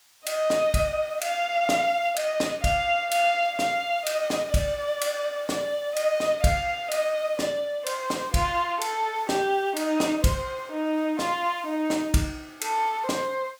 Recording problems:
background hiss; SNR 25 dB

